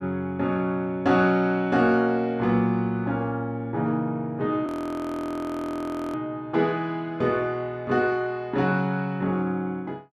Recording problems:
audio freezing; at 4.5 s for 1.5 s

